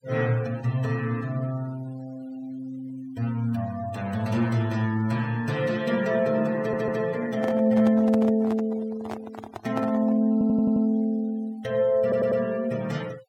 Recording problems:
denoising artefacts; signal-to-artefact ratio 23 dB
audio stuttering; at 6.5 s, at 10 s and at 12 s
microphone handling noise; from 7.5 to 10 s; peak -5 dB vs average level

